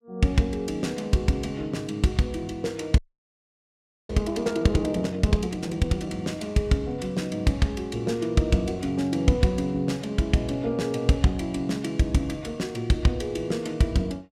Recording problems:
audio freezing; at 3 s for 1 s

